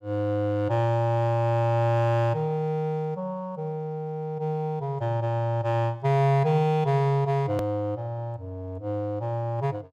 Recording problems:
hard cut with a click; at 7.5 s

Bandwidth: 15.5 kHz